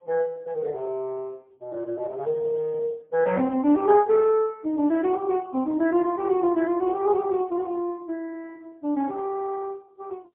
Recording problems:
telephone audio; 220 Hz to 3.9 kHz, AMR-NB, then MP3

